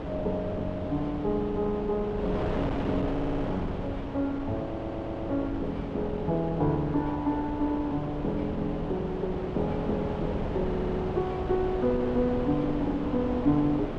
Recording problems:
wind on the microphone; below 590 Hz, SNR 5 dB
audio stuttering; at 3 s, at 4.5 s and at 11 s

